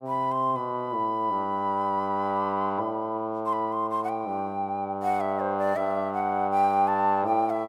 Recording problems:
none

